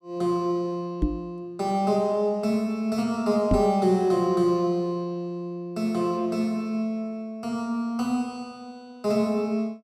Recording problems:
microphone thump; at 1 s and at 3.5 s; peak +6 dB vs average level

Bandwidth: 13.5 kHz